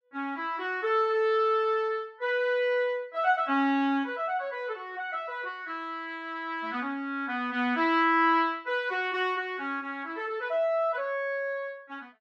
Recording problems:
none

